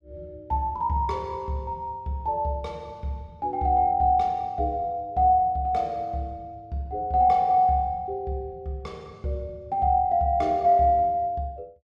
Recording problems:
none

